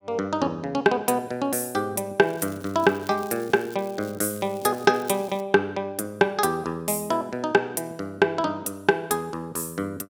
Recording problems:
crackle; from 2 to 5.5 s; loose cable, SNR 22 dB

